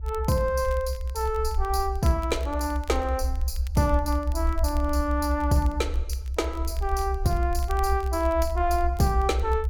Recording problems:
low-frequency rumble; below 68 Hz, strongest tone 66 Hz, SNR 3 dB
crackling; vinyl, SNR 24 dB

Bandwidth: 17 kHz